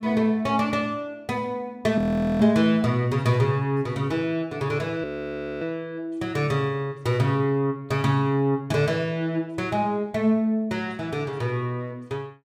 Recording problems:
audio freezing; at 2 s and at 5 s for 0.5 s

